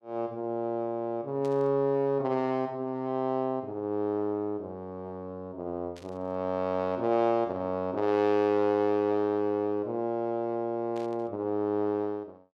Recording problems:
burst of static; at 1.5 s, at 6 s and at 11 s; peak -16 dB vs average level

